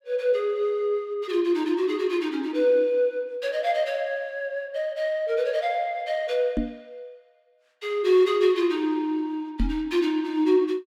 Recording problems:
microphone thump; at 6.5 s and at 9.5 s; peak +2 dB vs average level

